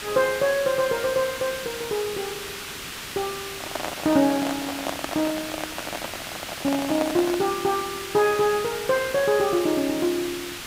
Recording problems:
background hiss; SNR 8 dB
handling noise; from 3.5 to 7.5 s; peak 0 dB vs average level

